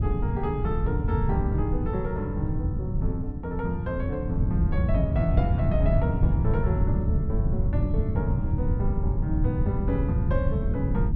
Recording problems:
wind noise; below 140 Hz, SNR -5 dB

